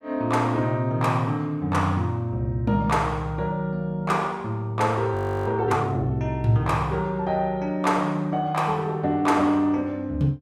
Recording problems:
frozen audio; at 5 s

